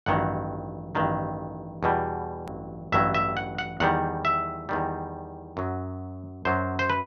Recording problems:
low-pass filter; nothing above 6.7 kHz
edit click; at 2.5 s

